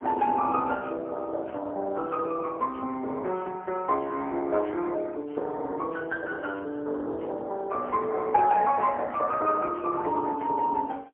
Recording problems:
telephone audio; 260 Hz to 3.1 kHz, AMR-NB, then MP3

